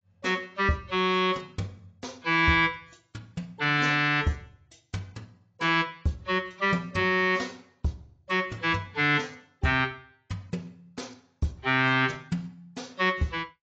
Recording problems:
codec artefacts; AAC, log-spectral distance 3 dB, nothing above 7.3 kHz

